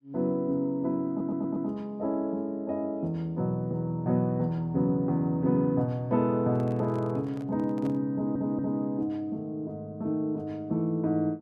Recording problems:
stutter; at 1 s and at 8 s
microphone handling noise; from 6.5 to 8 s; peak -10 dB vs average level

